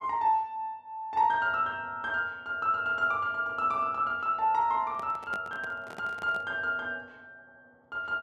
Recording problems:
handling noise; from 5 to 6.5 s; peak -8 dB vs average level

